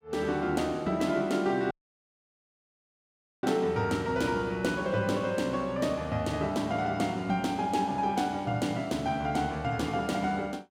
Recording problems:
audio cutting out; at 1.5 s for 1.5 s

